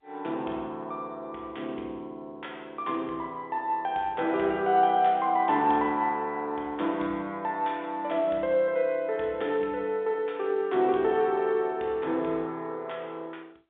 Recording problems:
telephone audio; 190 Hz to 3.7 kHz, G.711

